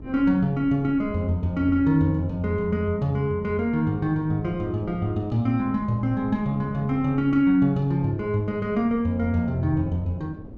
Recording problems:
wind on the microphone; below 300 Hz, SNR 18 dB

